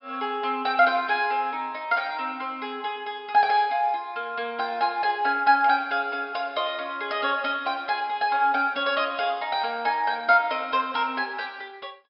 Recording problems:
low-pass filter; nothing above 5.3 kHz

